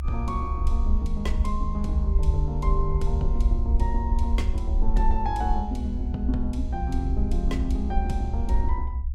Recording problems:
rumble; below 66 Hz, SNR -4 dB

